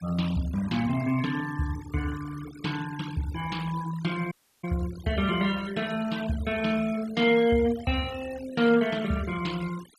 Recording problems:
noise reduction artefacts; signal-to-artefact ratio 16 dB
dropout; at 4.5 s

